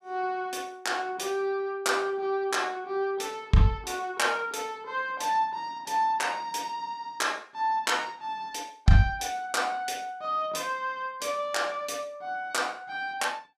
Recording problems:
none

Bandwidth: 14.5 kHz